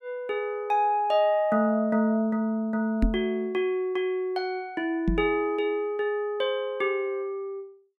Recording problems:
microphone bump; at 3 s and at 5 s; peak +5 dB vs average level

